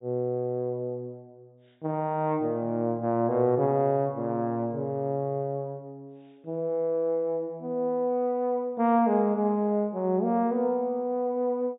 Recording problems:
treble missing; nothing above 4 kHz

